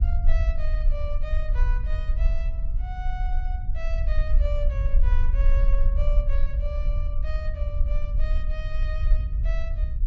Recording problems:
treble cut off; nothing above 8 kHz
low-frequency rumble; below 48 Hz, SNR -13 dB

